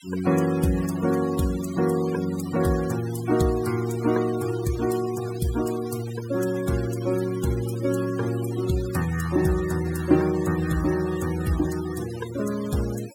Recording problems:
denoising artefacts; signal-to-artefact ratio 16 dB

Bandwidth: 17 kHz